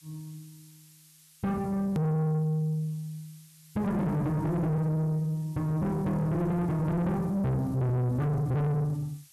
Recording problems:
distorted audio; soft clipping, signal-to-distortion ratio 7 dB
hiss; slope +5 dB per octave, SNR 28 dB
edit click; at 2 s

